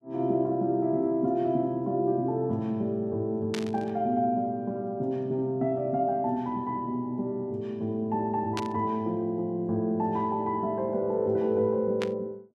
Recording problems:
burst of static; at 3.5 s, at 8.5 s and at 12 s; peak -2 dB vs average level

